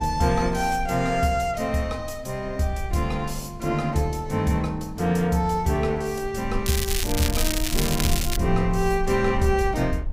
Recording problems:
low-frequency rumble; below 48 Hz, strongest tone 22 Hz, SNR 11 dB
crackling; from 6.5 to 8.5 s; loose cable, SNR 3 dB

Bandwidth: 15.5 kHz